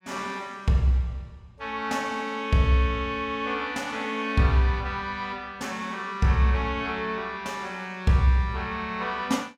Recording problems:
none

